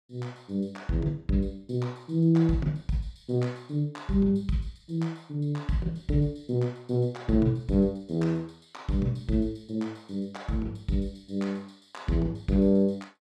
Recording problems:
none

